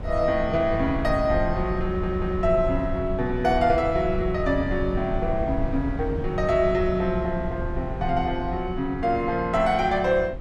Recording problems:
rumble; below 120 Hz, SNR 8 dB
audio stuttering; at 2 s

